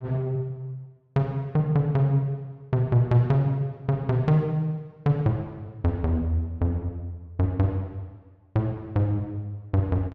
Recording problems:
none

